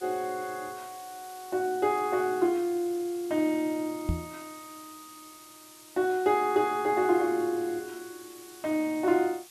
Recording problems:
background hiss; slope +2 dB per octave, SNR 20 dB
microphone bump; at 4 s; peak +2 dB vs average level

